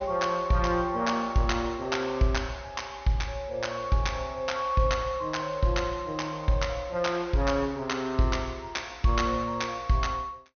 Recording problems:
low-pass filter; nothing above 6.4 kHz

